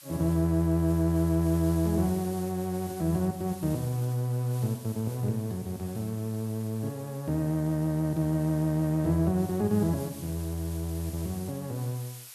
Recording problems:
background hiss; slope +3 dB per octave, SNR 18 dB

